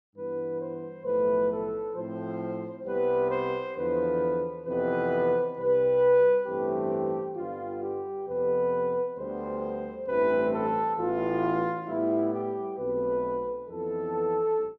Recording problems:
none

